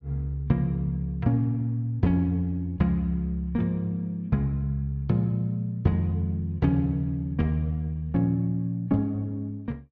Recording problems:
none

